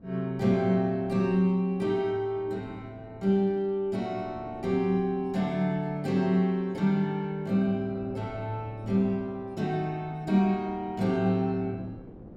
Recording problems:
wind noise; below 380 Hz, SNR 22 dB

